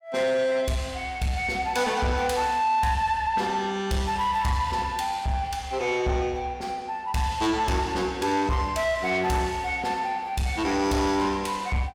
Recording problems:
distortion; soft clipping, signal-to-distortion ratio 10 dB

